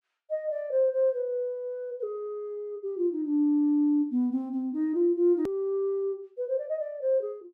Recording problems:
hard cut with a click; at 5.5 s

